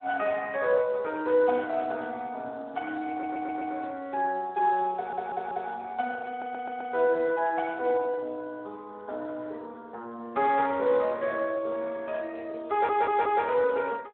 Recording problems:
phone line; 280 Hz to 3 kHz, Speex
stutter; 4 times, first at 3 s

